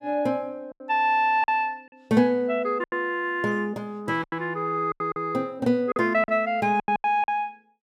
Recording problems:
lost packets; 9% of the sound replaced, filled with silence

